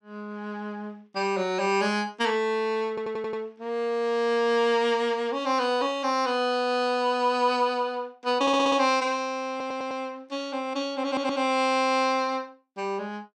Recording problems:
audio stuttering; 4 times, first at 3 s

